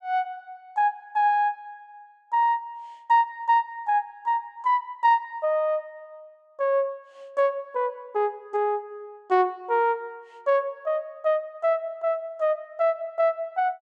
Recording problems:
none

